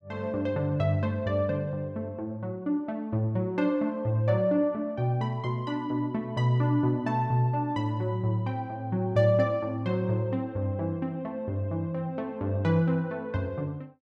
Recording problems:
none

